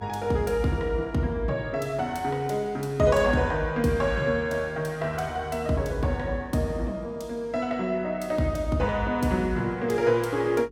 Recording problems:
hum; 50 Hz, harmonics up to 450 Hz, SNR 24 dB

